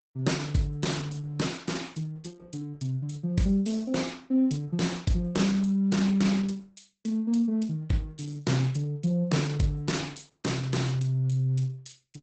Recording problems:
lossy codec; Opus, log-spectral distance 4 dB, nothing above 8 kHz

